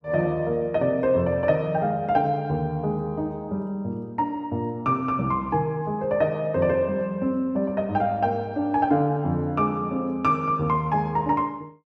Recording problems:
none

